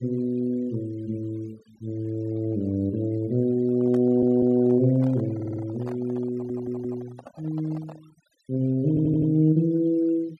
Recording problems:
denoising artefacts; signal-to-artefact ratio 28 dB
microphone handling noise; from 3.5 to 8 s; peak -12 dB vs average level
audio stuttering; 4 times, first at 4 s

